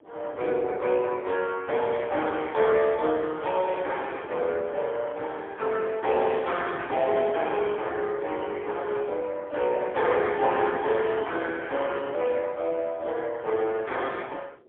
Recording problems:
telephone audio; 320 Hz to 3.4 kHz, AMR-NB, then MP3
wind noise; below 530 Hz, SNR 21 dB

